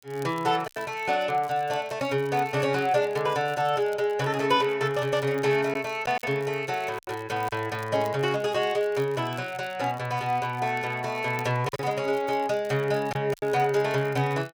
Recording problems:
crackle; vinyl, SNR 25 dB
lost packets; 3% of the sound replaced, filled with silence

